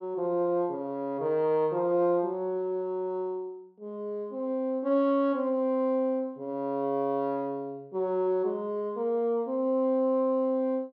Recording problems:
none

